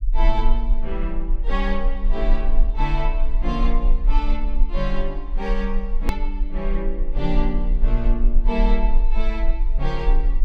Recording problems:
low-frequency rumble; below 34 Hz, strongest tone 18 Hz, SNR -4 dB
click at an edit; at 6 s

